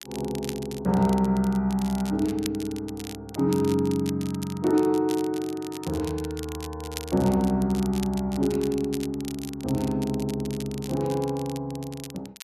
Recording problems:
crackling; vinyl, SNR 15 dB

